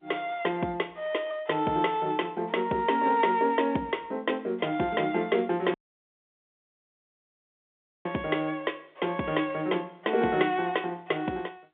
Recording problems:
phone line; 190 Hz to 3.6 kHz, G.711
audio cutting out; at 5.5 s for 2.5 s

